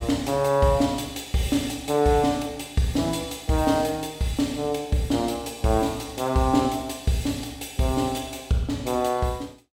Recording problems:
none

